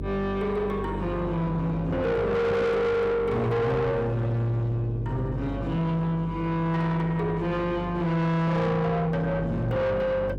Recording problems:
distorted audio; soft clipping, signal-to-distortion ratio 6 dB
hum; 50 Hz, harmonics up to 500 Hz, SNR 9 dB

